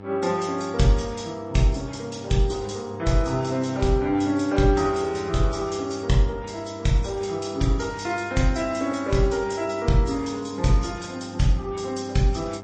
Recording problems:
lossy compression; MP3, log-spectral distance 4 dB, nothing above 8.2 kHz
hum; 50 Hz, harmonics up to 1.8 kHz, SNR 17 dB

